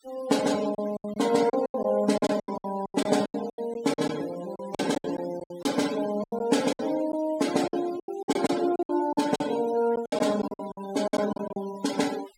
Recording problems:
denoising artefacts; signal-to-artefact ratio 14 dB
lost packets; 16% of the sound replaced, filled with silence

